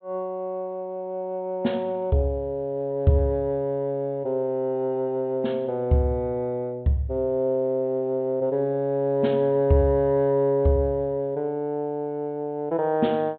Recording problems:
treble cut off; nothing above 4 kHz

